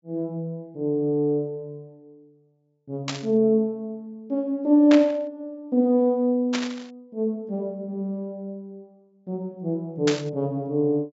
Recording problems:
treble cut off; nothing above 8 kHz
static burst; 4 times, first at 3 s; peak +1 dB vs average level

